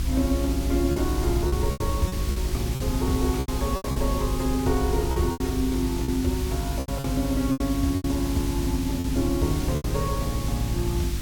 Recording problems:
hum; 50 Hz, harmonics up to 350 Hz, SNR 5 dB
background hiss; slope +1 dB per octave, SNR 9 dB
rumble; below 64 Hz, strongest tone 62 Hz, SNR 6 dB
wind noise; below 1.4 kHz, SNR 26 dB
lost packets; 9% of the sound replaced, filled with repeated pitch periods

